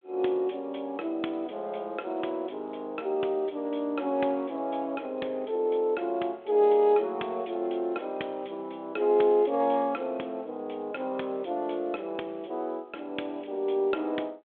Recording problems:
phone line; 260 Hz to 3.5 kHz, G.726

